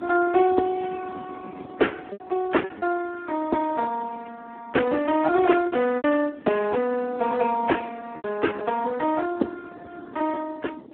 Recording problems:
telephone audio; 220 Hz to 3 kHz, Speex
wind on the microphone; below 420 Hz, SNR 19 dB
packet loss; 5% of the sound replaced, filled with repeated pitch periods

